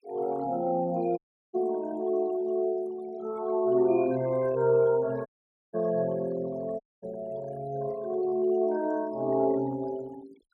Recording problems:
denoising artefacts; signal-to-artefact ratio 22 dB
audio cutting out; at 1 s, at 5.5 s and at 7 s

